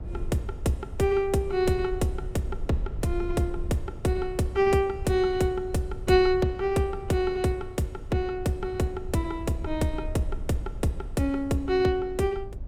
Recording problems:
rumble; below 68 Hz, SNR 12 dB

